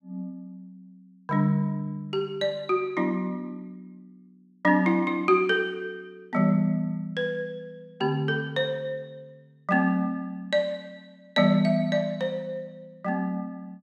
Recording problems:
none

